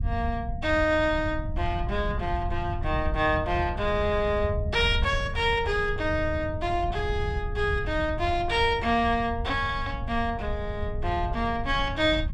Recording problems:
rumble; below 98 Hz, SNR 7 dB

